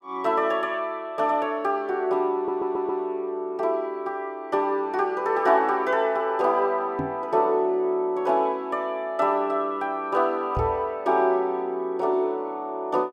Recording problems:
audio stuttering; at 2.5 s
microphone thump; at 7 s and at 11 s; peak -2 dB vs average level

